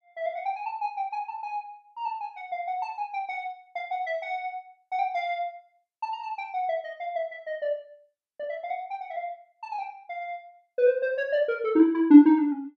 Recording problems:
none

